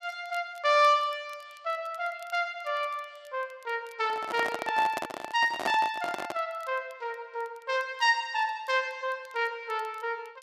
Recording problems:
crackle; vinyl, SNR 29 dB
handling noise; from 4 to 6.5 s; peak +2 dB vs average level

